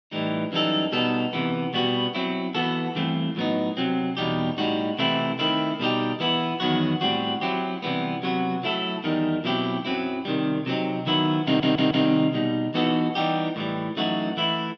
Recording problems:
stutter; at 11 s

